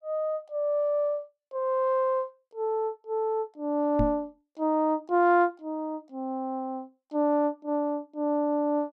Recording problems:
microphone bump; at 4 s; peak +3 dB vs average level

